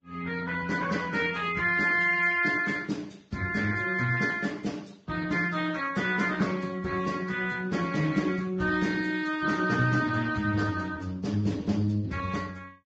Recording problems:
codec artefacts; Speex, then Vorbis, log-spectral distance 4 dB, nothing above 7.3 kHz

